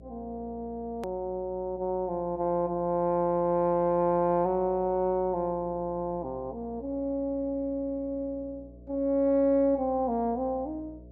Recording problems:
hum; 60 Hz, harmonics up to 660 Hz, SNR 22 dB
edit click; at 1 s

